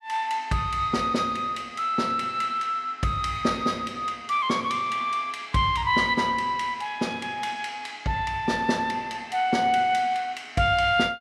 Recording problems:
none

